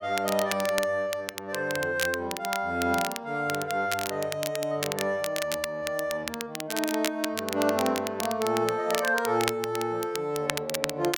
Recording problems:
crackle; vinyl, SNR 6 dB

